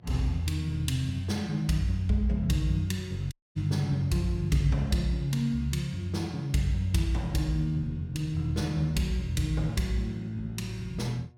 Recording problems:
hum; 60 Hz, harmonics up to 720 Hz, SNR 27 dB
audio cutting out; at 3.5 s

